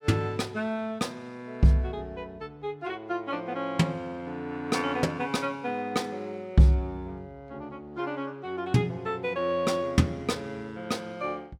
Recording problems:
none

